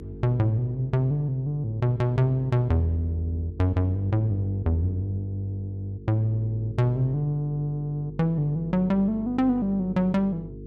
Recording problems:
hum; 50 Hz, harmonics up to 450 Hz, SNR 16 dB

